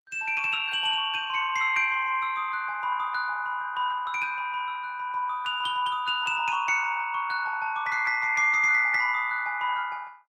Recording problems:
lossy compression; Opus, log-spectral distance 3 dB, nothing above 17.1 kHz

